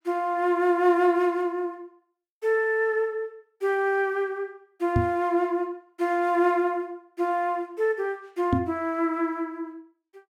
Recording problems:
microphone bump; at 5 s and at 8.5 s; peak +5 dB vs average level

